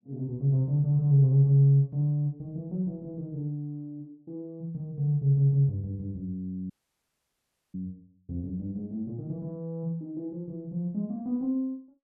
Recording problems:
audio cutting out; at 6.5 s for 1 s

